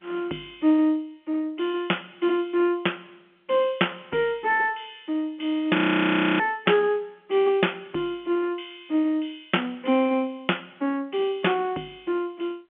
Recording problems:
telephone audio; 220 Hz to 3.3 kHz, G.711
frozen audio; at 6 s for 0.5 s

